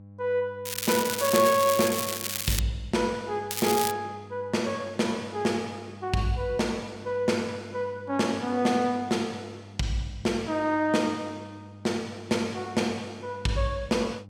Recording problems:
electrical hum; 50 Hz, harmonics up to 800 Hz, SNR 19 dB
crackling; from 0.5 to 2.5 s and at 3.5 s; loose cable, SNR 2 dB

